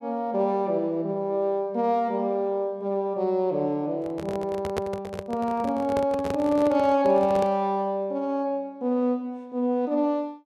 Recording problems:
microphone handling noise; from 4 to 7.5 s; peak 0 dB vs average level

